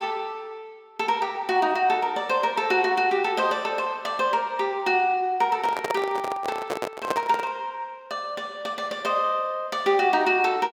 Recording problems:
handling noise; from 5.5 to 7.5 s; peak +2 dB vs average level

